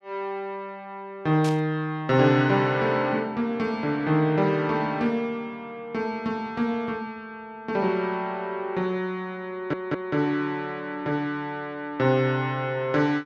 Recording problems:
burst of static; at 1.5 s; peak -7 dB vs average level
stutter; at 9.5 s

